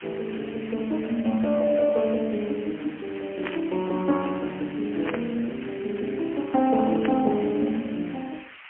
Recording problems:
phone line; 190 Hz to 2.7 kHz, AMR-NB, then MP3
background hiss; SNR 17 dB
static burst; at 3.5 s, at 5 s and at 7 s; peak -2 dB vs average level

